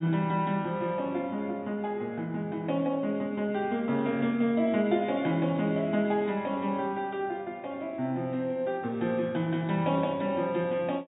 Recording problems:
low-pass filter; nothing above 4 kHz

